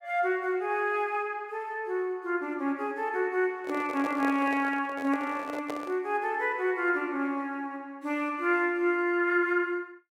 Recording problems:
handling noise; from 3.5 to 6 s; peak -3 dB vs average level

